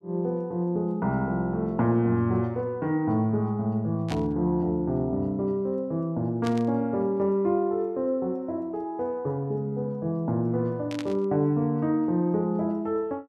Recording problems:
static burst; at 4 s, at 6.5 s and at 11 s; peak -6 dB vs average level

